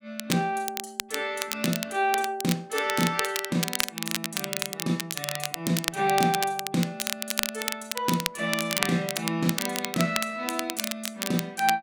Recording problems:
crackle; vinyl, SNR 2 dB

